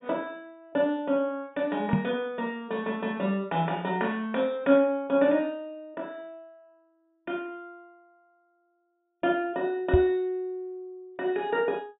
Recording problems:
treble missing; nothing above 3.8 kHz
microphone bump; at 2 s and at 10 s; peak +7 dB vs average level

